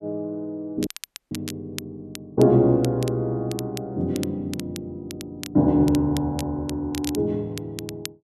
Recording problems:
crackle; vinyl, SNR 15 dB
audio cutting out; at 1 s

